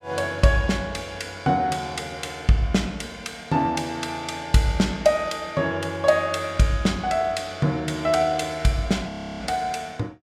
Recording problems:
frozen audio; at 9 s

